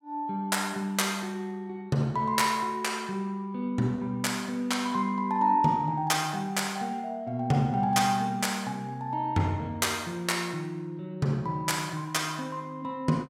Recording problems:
none

